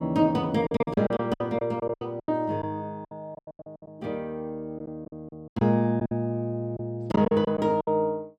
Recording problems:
packet loss; 15% of the sound replaced, filled with silence

